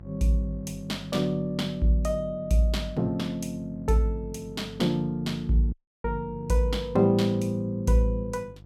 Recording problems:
hum; 50 Hz, harmonics up to 700 Hz, SNR 19 dB
dropout; at 5.5 s

